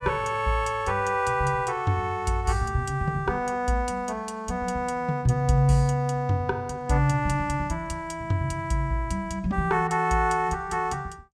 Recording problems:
none

